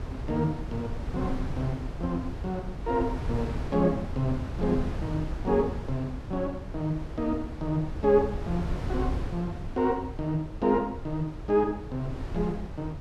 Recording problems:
wind noise; below 160 Hz, SNR 6 dB

